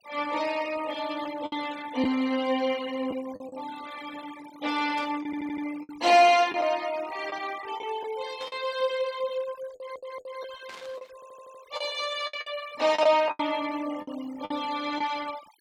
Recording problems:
denoising artefacts; signal-to-artefact ratio 18 dB
lost packets; 6% of the sound replaced, filled with the last packet
burst of static; at 5 s, at 8.5 s and at 11 s; peak -11 dB vs average level
audio stuttering; at 5 s, at 9.5 s and at 11 s

